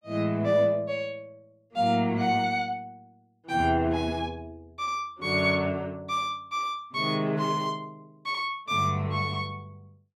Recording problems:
none

